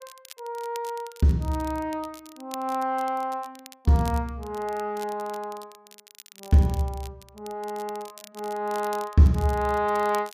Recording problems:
crackling; vinyl, SNR 21 dB

